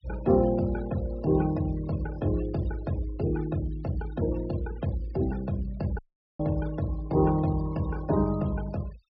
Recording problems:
treble cut off; nothing above 5.5 kHz
noise reduction artefacts; signal-to-artefact ratio 20 dB
audio cutting out; at 6 s

